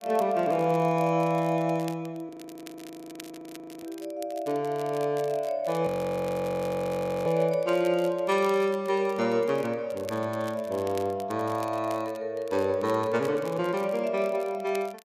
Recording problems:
crackling; vinyl, SNR 22 dB
audio freezing; at 2.5 s for 1.5 s and at 6 s for 1.5 s

